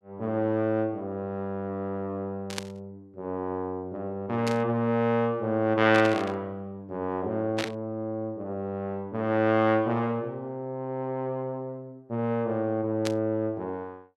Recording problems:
static burst; 5 times, first at 2.5 s; peak +1 dB vs average level

